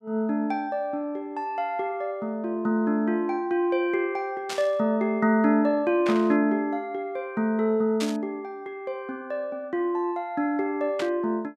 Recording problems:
static burst; 4 times, first at 4.5 s; peak -3 dB vs average level

